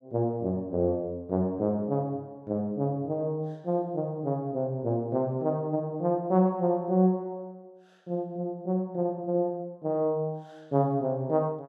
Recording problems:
none

